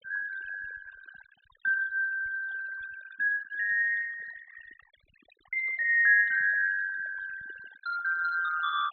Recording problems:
treble missing; nothing above 4.1 kHz
noise reduction artefacts; signal-to-artefact ratio 16 dB

